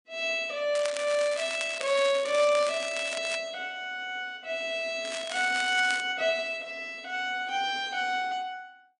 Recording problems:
lossy codec; MP3, log-spectral distance 4 dB
crackle; from 1 to 3.5 s and at 5 s; loose cable, SNR 10 dB

